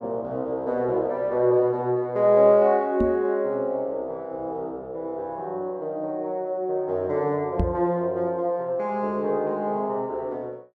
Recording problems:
microphone thump; at 3 s and at 7.5 s; peak +4 dB vs average level

